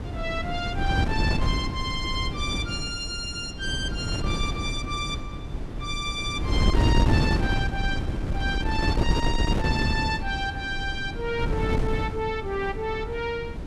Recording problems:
wind on the microphone; below 230 Hz, SNR -1 dB

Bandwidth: 12.5 kHz